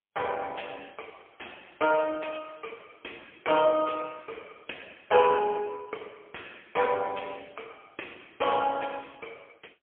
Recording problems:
telephone audio; 280 Hz to 3.3 kHz, AMR-NB, then MP3

